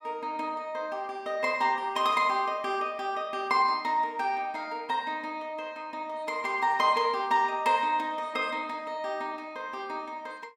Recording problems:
none

